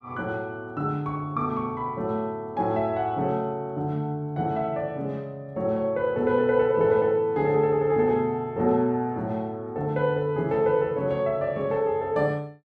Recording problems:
none

